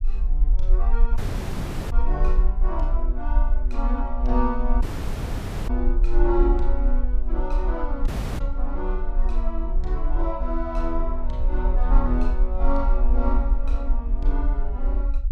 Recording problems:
low-frequency rumble; below 42 Hz, SNR -5 dB
audio cutting out; at 1 s for 0.5 s, at 5 s for 1 s and at 8 s

